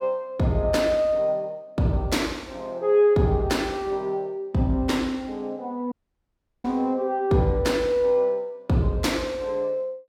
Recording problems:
dropout; at 6 s for 0.5 s

